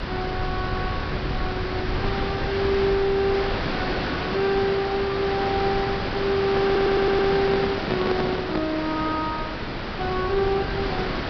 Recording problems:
treble cut off; nothing above 5.5 kHz
hiss; SNR 3 dB
rumble; below 110 Hz, SNR 10 dB
microphone handling noise; from 6.5 to 8.5 s; peak +2 dB vs average level
stutter; at 6.5 s

